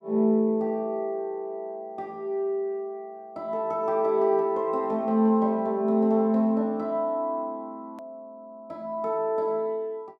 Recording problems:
edit click; at 8 s

